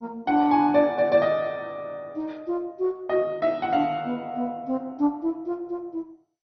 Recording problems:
lossy compression; MP2, log-spectral distance 2 dB, nothing above 5.5 kHz

